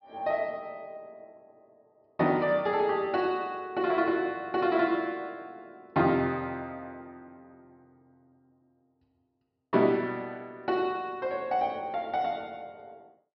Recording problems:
treble cut off; nothing above 5.5 kHz

